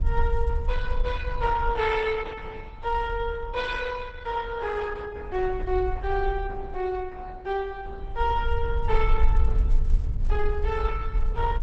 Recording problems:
lossy codec; Opus, log-spectral distance 3 dB
wind on the microphone; below 52 Hz, SNR 1 dB

